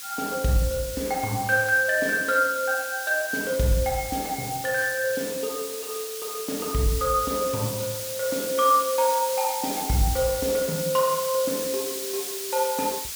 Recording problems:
background hiss; SNR 7 dB

